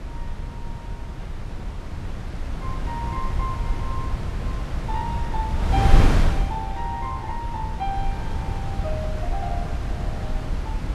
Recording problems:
wind on the microphone; below 110 Hz, SNR -6 dB

